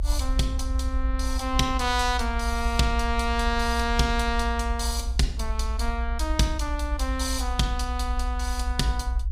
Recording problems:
rumble; below 62 Hz, SNR 2 dB

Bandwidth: 15 kHz